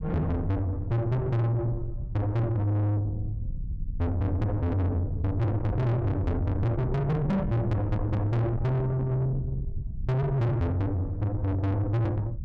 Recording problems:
distortion; soft clipping, signal-to-distortion ratio 6 dB
low-frequency rumble; below 140 Hz, SNR 8 dB

